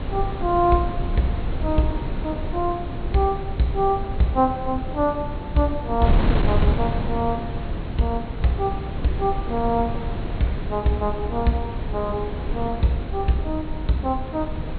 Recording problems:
low-pass filter; nothing above 4.3 kHz
wind on the microphone; below 190 Hz, SNR 4 dB

